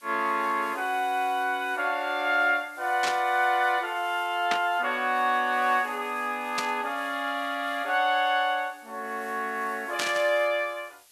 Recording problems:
hiss; slope +2 dB per octave, SNR 25 dB
burst of static; 4 times, first at 3 s; peak +2 dB vs average level

